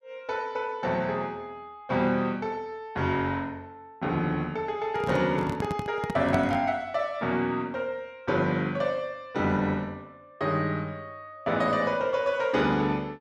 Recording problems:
microphone handling noise; from 5 to 6.5 s; peak +3 dB vs average level

